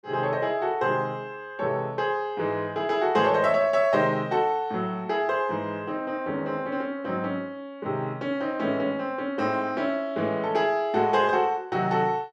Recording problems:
none

